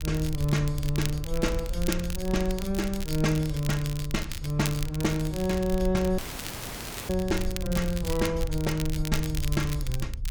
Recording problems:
low-frequency rumble; below 64 Hz, SNR 7 dB
crackle; vinyl, SNR 11 dB
dropout; at 6 s for 1 s

